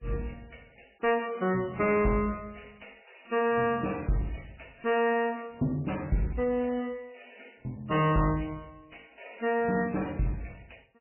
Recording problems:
lossy codec; MP3, log-spectral distance 9 dB, nothing above 2.8 kHz
distorted audio; soft clipping, signal-to-distortion ratio 11 dB

